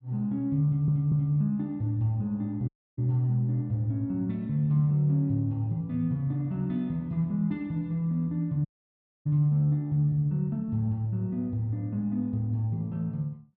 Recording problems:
audio stuttering; at 0.5 s
audio cutting out; at 2.5 s and at 8.5 s for 0.5 s

